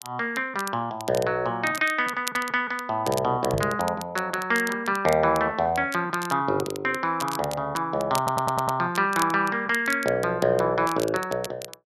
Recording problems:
crackle; vinyl, SNR 14 dB
microphone thump; at 3.5 s; peak -2 dB vs average level
stutter; at 8 s

